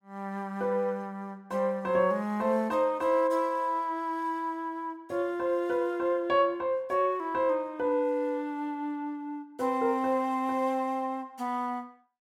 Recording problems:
none

